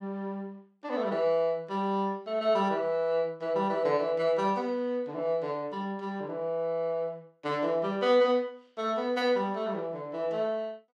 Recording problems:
none

